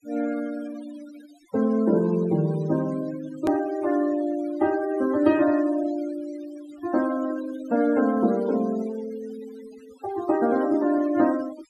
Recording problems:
noise reduction artefacts; signal-to-artefact ratio 18 dB
hard cut with a click; at 3.5 s

